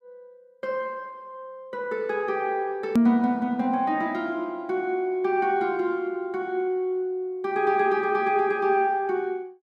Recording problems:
click at an edit; at 3 s

